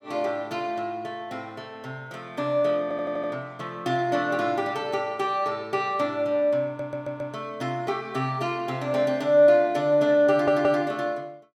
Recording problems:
audio stuttering; at 3 s, at 6.5 s and at 10 s

